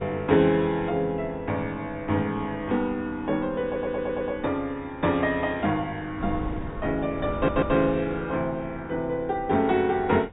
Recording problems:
low-pass filter; nothing above 4 kHz
wind on the microphone; below 280 Hz, SNR 16 dB
audio stuttering; at 3.5 s and at 7.5 s

